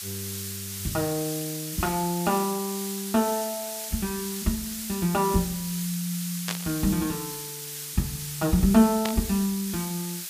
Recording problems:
hiss; slope +4 dB per octave, SNR 6 dB
static burst; at 6.5 s and at 9 s; peak +2 dB vs average level

